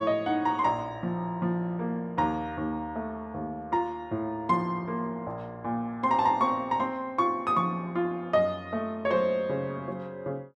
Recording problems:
none

